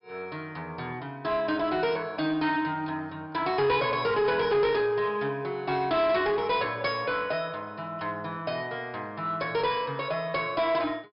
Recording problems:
low-pass filter; nothing above 5.5 kHz
distorted audio; soft clipping, signal-to-distortion ratio 10 dB

